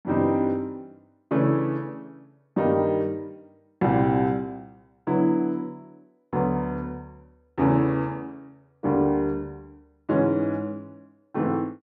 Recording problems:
none

